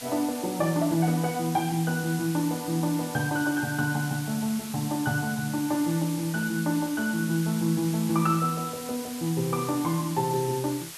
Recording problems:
background hiss; slope +1 dB per octave, SNR 11 dB

